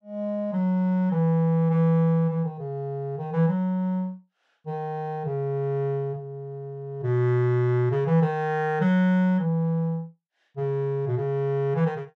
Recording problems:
none

